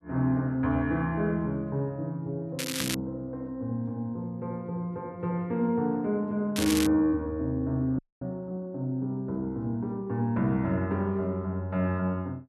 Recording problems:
crackle; at 2.5 s and at 6.5 s; loose cable, SNR 4 dB
dropout; at 8 s

